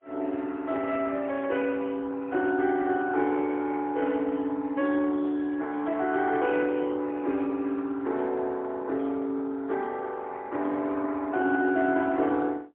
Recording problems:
telephone audio; 240 Hz to 3.4 kHz, AMR-NB, then MP3

